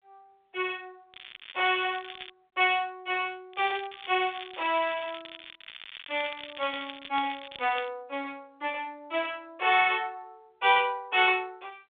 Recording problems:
telephone audio; 300 Hz to 3.6 kHz, G.726
crackling; from 1 to 2.5 s and from 3.5 to 8 s; loose cable, SNR 14 dB

